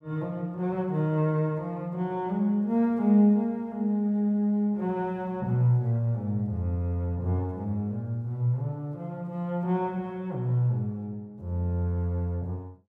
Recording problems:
none

